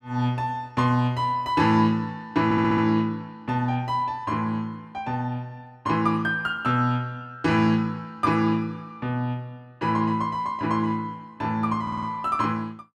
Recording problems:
audio stuttering; at 2.5 s and at 12 s

